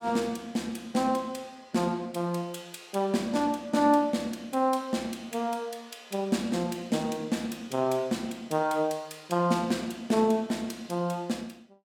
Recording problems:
none

